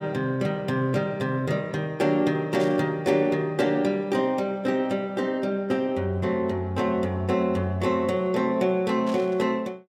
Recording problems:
static burst; at 2.5 s and at 9 s; peak -12 dB vs average level

